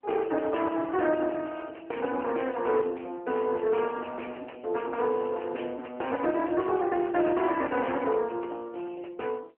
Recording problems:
phone line; 280 Hz to 3 kHz, AMR-NB
distortion; soft clipping, signal-to-distortion ratio 10 dB

